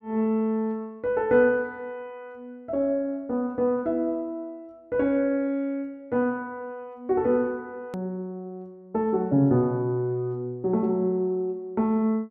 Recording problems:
click at an edit; at 8 s

